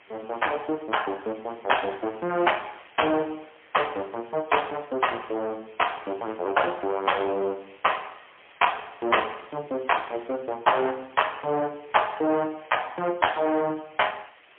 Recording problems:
telephone audio; 260 Hz to 3.3 kHz, AMR-NB, then MP3
hiss; SNR 25 dB

